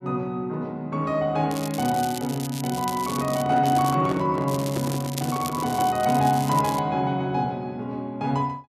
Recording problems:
crackle; from 1.5 to 3.5 s, at 3.5 s and from 4.5 to 7 s; loose cable, SNR 12 dB
handling noise; from 3 to 6 s; peak -1 dB vs average level

